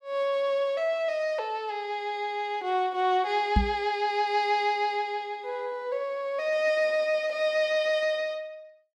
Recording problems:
microphone thump; at 3.5 s; peak +7 dB vs average level

